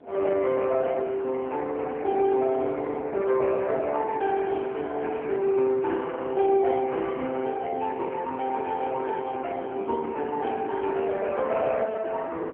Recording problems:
phone line; 260 Hz to 3.1 kHz, AMR-NB
wind noise; below 490 Hz, SNR 22 dB

